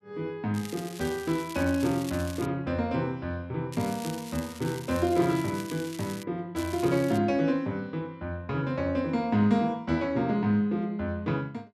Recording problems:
crackle; from 0.5 to 2.5 s, from 3.5 to 6 s and at 6.5 s; loose cable, SNR 15 dB

